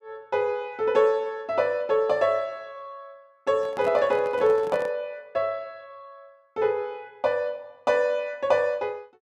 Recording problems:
handling noise; from 3.5 to 5 s; peak -9 dB vs average level

